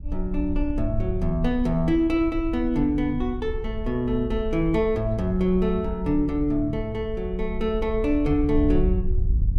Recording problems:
wind noise; below 66 Hz, SNR 7 dB

